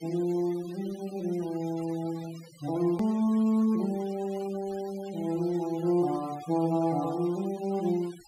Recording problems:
denoising artefacts; signal-to-artefact ratio 20 dB
hard cut with a click; at 3 s

